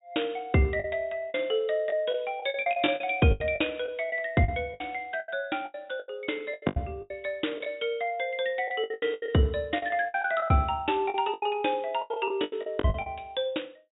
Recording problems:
treble missing; nothing above 4 kHz
lost packets; 15% of the sound replaced, filled with the last packet

